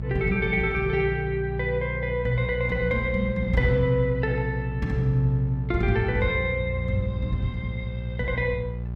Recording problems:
electrical hum; 60 Hz, harmonics up to 420 Hz, SNR 6 dB

